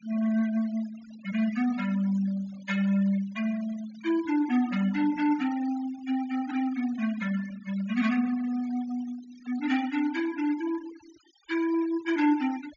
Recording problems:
treble cut off; nothing above 6.9 kHz
denoising artefacts; signal-to-artefact ratio 18 dB

